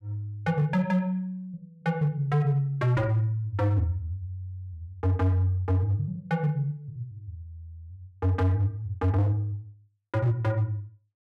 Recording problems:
distorted audio; hard clipping, signal-to-distortion ratio 11 dB

